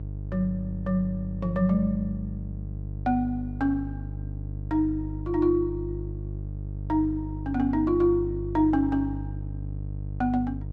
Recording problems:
hum; 50 Hz, harmonics up to 450 Hz, SNR 8 dB

